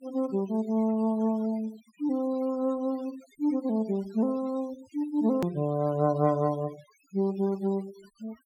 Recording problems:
denoising artefacts; signal-to-artefact ratio 24 dB
edit click; at 5.5 s

